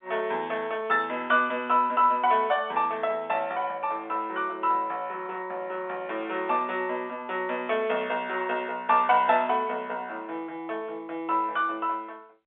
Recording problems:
telephone audio; 300 Hz to 3.6 kHz, G.711

